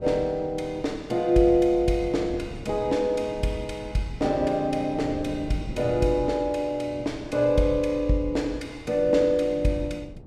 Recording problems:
wind on the microphone; below 290 Hz, SNR 17 dB

